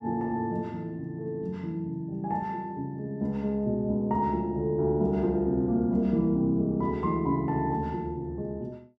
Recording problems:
none

